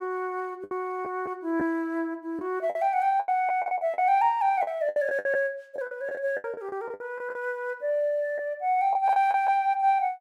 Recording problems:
lost packets; 11% of the sound replaced, filled with the last packet

